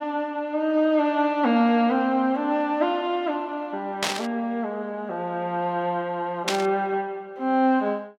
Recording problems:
static burst; at 4 s and at 6.5 s; peak +4 dB vs average level

